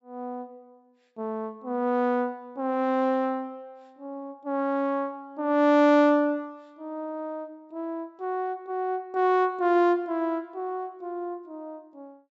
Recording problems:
low-pass filter; nothing above 7.6 kHz

